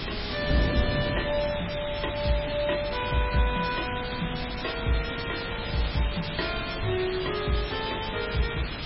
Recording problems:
lossy codec; MP3, log-spectral distance 17 dB, nothing above 5.5 kHz
mains hum; 50 Hz, harmonics up to 400 Hz, SNR 16 dB
hiss; SNR 5 dB
wind noise; below 300 Hz, SNR 7 dB

